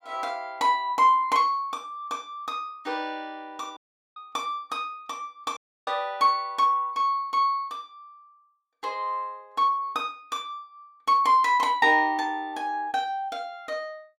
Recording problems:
dropout; at 4 s and at 5.5 s

